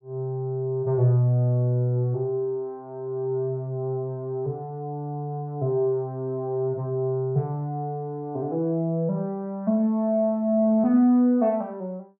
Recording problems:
none

